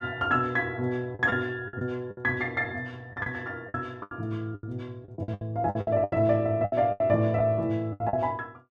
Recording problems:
lost packets; 13% of the sound replaced, filled with the last packet

